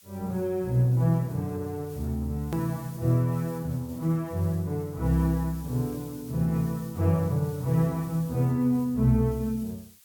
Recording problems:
background hiss; slope +5 dB per octave, SNR 22 dB
hard cut with a click; at 2.5 s

